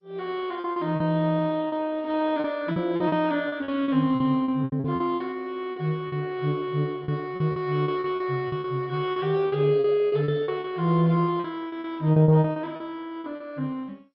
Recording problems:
lossy compression; MP2, log-spectral distance 2 dB, nothing above 4.8 kHz
packet loss; 13% of the sound replaced, filled with repeated pitch periods

